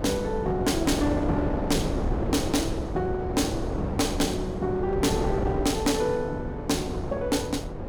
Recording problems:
distorted audio; hard clipping, signal-to-distortion ratio 11 dB
wind noise; below 480 Hz, SNR 4 dB

